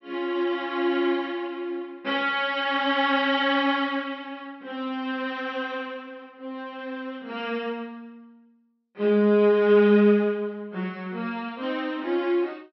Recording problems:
low-pass filter; nothing above 5.9 kHz

